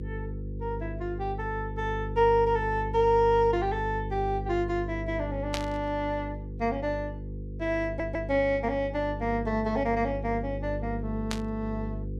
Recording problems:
hum; 50 Hz, harmonics up to 500 Hz, SNR 8 dB
static burst; at 5.5 s and at 11 s; peak 0 dB vs average level
audio stuttering; at 8 s

